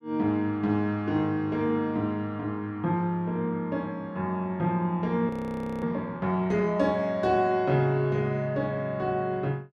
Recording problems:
audio freezing; at 5.5 s for 0.5 s

